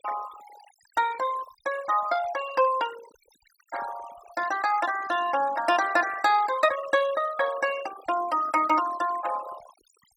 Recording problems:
denoising artefacts; signal-to-artefact ratio 16 dB

